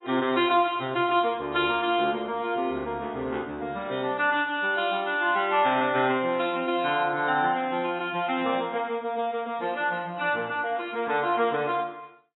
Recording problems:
codec artefacts; AAC, log-spectral distance 3 dB, nothing above 3.2 kHz

